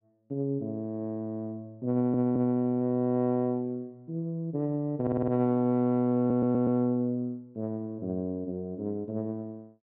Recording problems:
stutter; at 2 s, at 5 s and at 6 s

